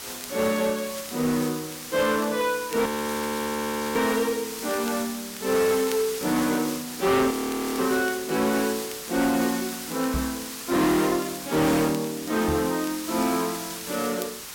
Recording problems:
distorted audio; hard clipping, uneven, signal-to-distortion ratio 10 dB
hiss; slope +1 dB per octave, SNR 9 dB
crackling; vinyl, SNR 22 dB
audio freezing; at 3 s for 1 s and at 7.5 s
knock on the microphone; at 10 s and at 12 s; peak 0 dB vs average level

